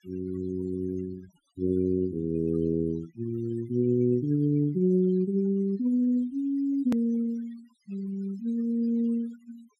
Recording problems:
noise reduction artefacts; signal-to-artefact ratio 23 dB
hard cut with a click; at 7 s

